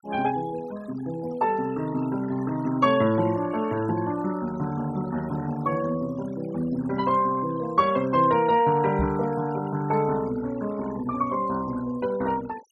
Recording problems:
denoising artefacts; signal-to-artefact ratio 19 dB
microphone bump; at 9 s; peak -1 dB vs average level

